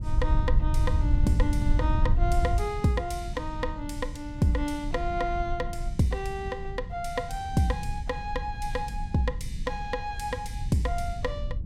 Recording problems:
rumble; below 78 Hz, SNR 9 dB
wind noise; below 78 Hz, SNR -1 dB

